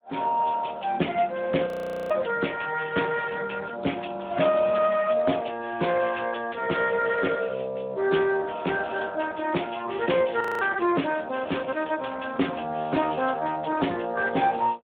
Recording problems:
telephone audio; 240 Hz to 3.4 kHz, Speex
audio freezing; at 1.5 s and at 10 s

